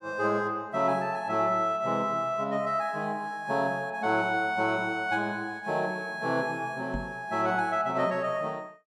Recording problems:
microphone bump; at 7 s; peak -3 dB vs average level

